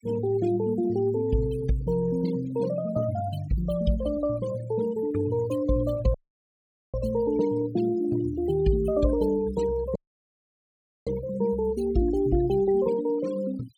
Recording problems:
noise reduction artefacts; signal-to-artefact ratio 17 dB
dropout; at 6 s for 1 s and at 10 s for 1 s

